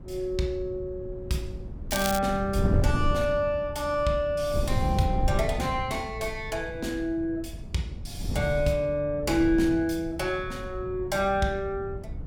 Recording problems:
wind noise; below 140 Hz, SNR 6 dB
crackling; at 2 s; loose cable, SNR 5 dB

